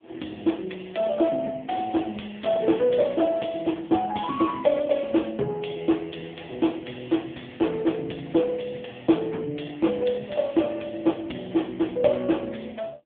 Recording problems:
telephone audio; 170 Hz to 3.5 kHz, AMR-NB

